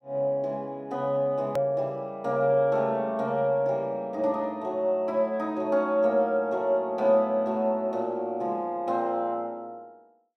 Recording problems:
hard cut with a click; at 1.5 s

